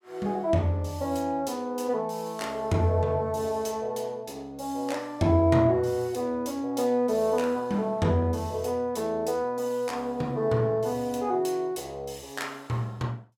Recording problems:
none

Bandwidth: 16.5 kHz